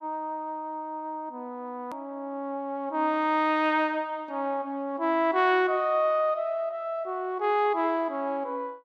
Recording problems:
edit click; at 2 s

